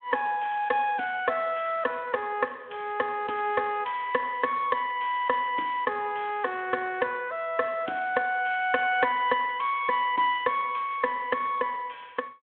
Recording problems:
phone line; 240 Hz to 3.4 kHz, Speex

